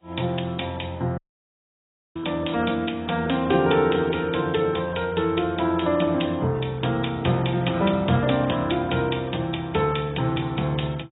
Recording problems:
lossy codec; AAC, log-spectral distance 10 dB, nothing above 3.8 kHz
dropout; at 1 s for 1 s

